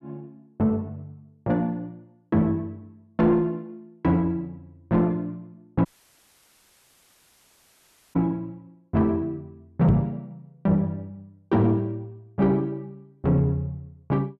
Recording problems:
distorted audio; soft clipping, signal-to-distortion ratio 11 dB
audio cutting out; at 6 s for 2.5 s
microphone thump; at 10 s; peak +7 dB vs average level

